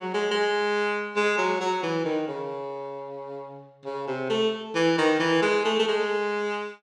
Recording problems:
none

